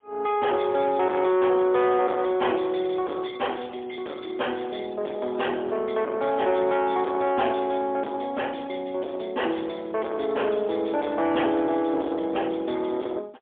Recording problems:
phone line; 260 Hz to 3.5 kHz, AMR-NB, then MP3
distorted audio; soft clipping, signal-to-distortion ratio 10 dB

